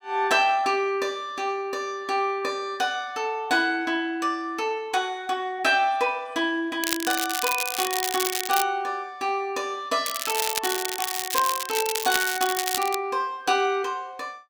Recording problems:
crackling; from 7 to 8.5 s and from 10 to 13 s; loose cable, SNR 2 dB

